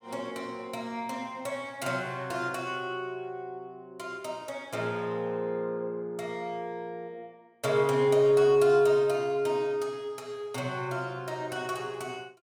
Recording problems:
none

